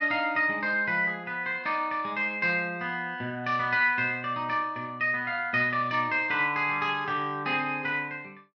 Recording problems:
none

